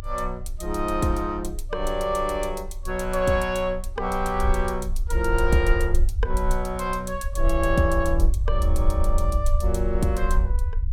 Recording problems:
rumble; below 58 Hz, strongest tone 26 Hz, SNR 2 dB

